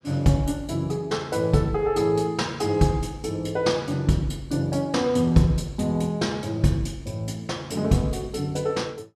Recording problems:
none

